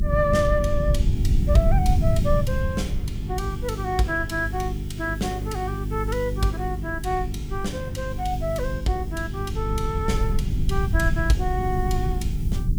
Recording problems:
hum; 50 Hz, harmonics up to 400 Hz, SNR 4 dB
background hiss; SNR 23 dB
rumble; below 100 Hz, SNR 0 dB

